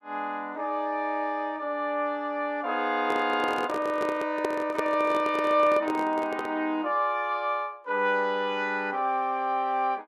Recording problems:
microphone handling noise; from 3 to 6.5 s; peak +1 dB vs average level

